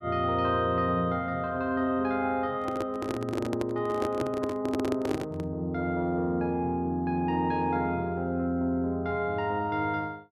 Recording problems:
microphone handling noise; from 2.5 to 5.5 s; peak +1 dB vs average level

